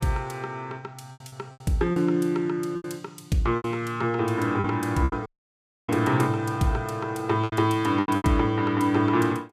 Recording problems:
packet loss; 9% of the sound replaced, filled with repeated pitch periods
audio cutting out; at 5.5 s for 0.5 s

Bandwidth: 15.5 kHz